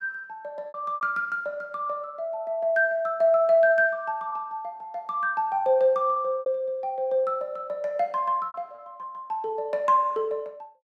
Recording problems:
packet loss; 4% of the sound replaced, filled with repeated pitch periods

